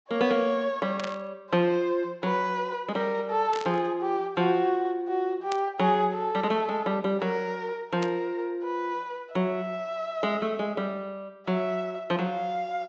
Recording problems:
treble missing; nothing above 8 kHz
static burst; 4 times, first at 1 s; peak -4 dB vs average level

